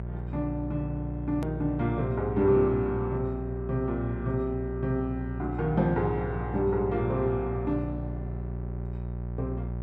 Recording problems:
electrical hum; 60 Hz, harmonics up to 780 Hz, SNR 6 dB
edit click; at 1.5 s

